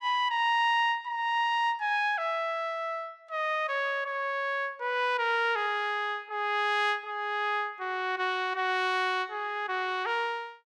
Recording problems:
none

